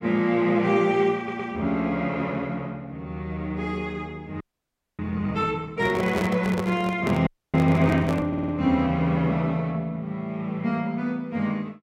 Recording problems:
stutter; at 1 s and at 8.5 s
frozen audio; at 4.5 s for 0.5 s and at 7.5 s
microphone handling noise; from 6 to 8.5 s; peak +1 dB vs average level

